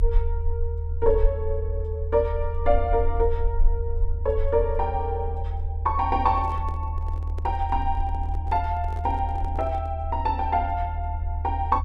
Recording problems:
low-frequency rumble; below 78 Hz, SNR 2 dB
handling noise; from 6 to 10 s; peak -10 dB vs average level

